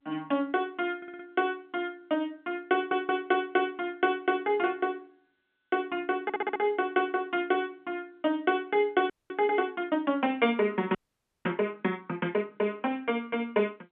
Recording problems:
telephone audio; 190 Hz to 3.6 kHz, G.711
stutter; at 1 s, at 2.5 s and at 6 s
frozen audio; at 9 s and at 11 s for 0.5 s

